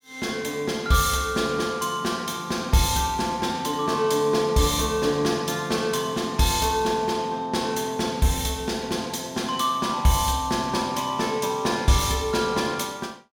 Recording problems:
none

